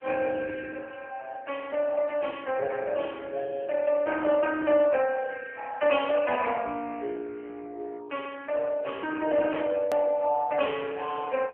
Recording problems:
phone line; 280 Hz to 3.3 kHz, AMR-NB
click at an edit; at 10 s

